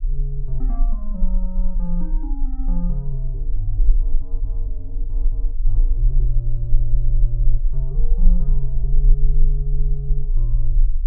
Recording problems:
rumble; below 36 Hz, strongest tone 18 Hz, SNR -8 dB

